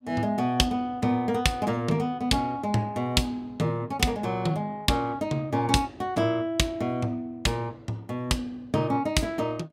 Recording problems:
none

